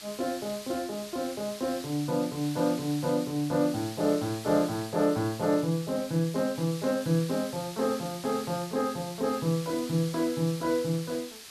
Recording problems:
hiss; slope +2 dB per octave, SNR 13 dB

